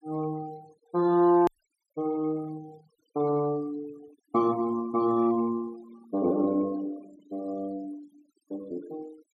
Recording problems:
noise reduction artefacts; signal-to-artefact ratio 25 dB
hard cut with a click; at 1.5 s

